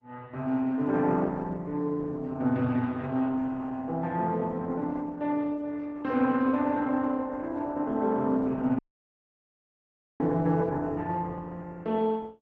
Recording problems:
lossy compression; Opus, log-spectral distance 2 dB
audio cutting out; at 9 s for 1.5 s

